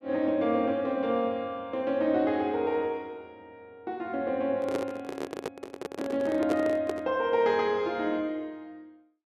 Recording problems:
handling noise; from 4.5 to 7 s; peak +1 dB vs average level

